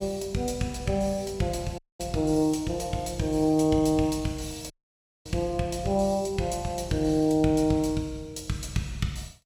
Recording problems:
audio cutting out; at 2 s and at 4.5 s for 0.5 s

